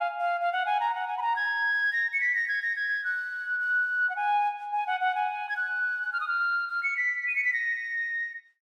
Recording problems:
none

